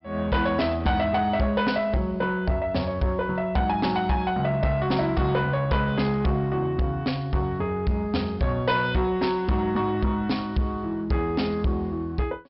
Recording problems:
treble missing; nothing above 5.4 kHz
distorted audio; soft clipping, signal-to-distortion ratio 11 dB

